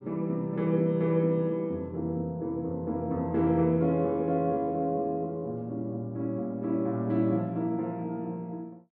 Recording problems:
none

